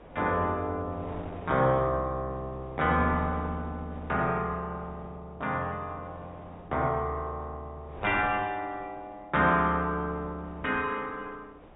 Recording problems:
treble missing; nothing above 4 kHz
wind noise; below 870 Hz, SNR 19 dB

